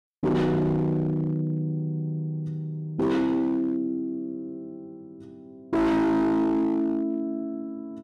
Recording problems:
distorted audio; hard clipping, signal-to-distortion ratio 8 dB

